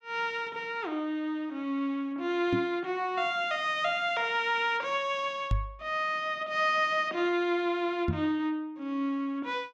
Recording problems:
microphone thump; at 2.5 s, at 5.5 s and at 8 s; peak +4 dB vs average level

